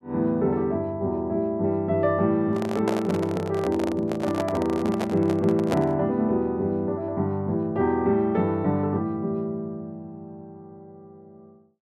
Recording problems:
microphone handling noise; from 2.5 to 6 s; peak +1 dB vs average level

